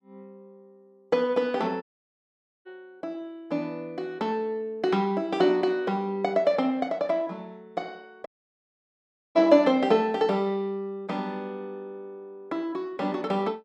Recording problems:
audio cutting out; at 2 s for 1 s and at 8.5 s for 1 s

